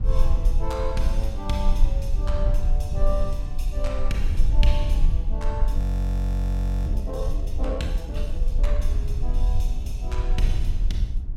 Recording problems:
rumble; below 50 Hz, SNR -7 dB
frozen audio; at 6 s for 1 s

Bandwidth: 16.5 kHz